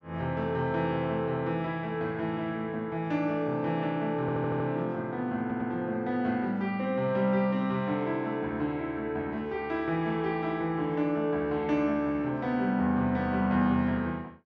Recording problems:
audio stuttering; at 4 s and at 5.5 s

